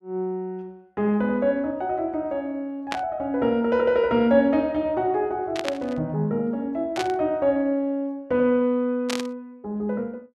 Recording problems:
static burst; 4 times, first at 3 s; peak 0 dB vs average level

